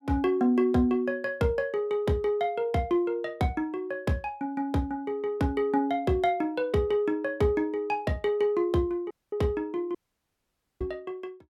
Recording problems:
dropout; at 9 s and at 10 s for 1 s

